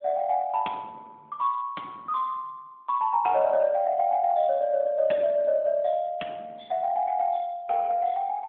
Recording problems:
phone line; 220 Hz to 3.5 kHz, AMR-NB

